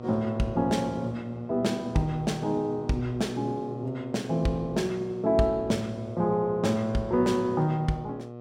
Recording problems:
hum; 60 Hz, harmonics up to 1.3 kHz, SNR 13 dB

